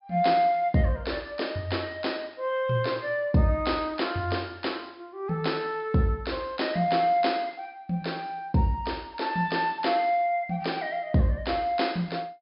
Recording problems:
treble missing; nothing above 5.5 kHz

